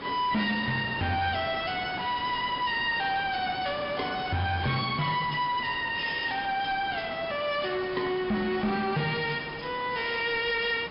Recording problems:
treble missing; nothing above 5.2 kHz
codec artefacts; AAC, log-spectral distance 9 dB
distortion; soft clipping, signal-to-distortion ratio 11 dB
background hiss; SNR 12 dB

